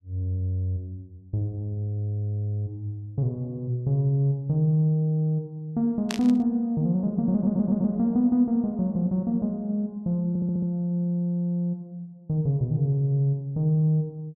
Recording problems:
static burst; at 6 s; peak -2 dB vs average level
stutter; at 7.5 s and at 10 s

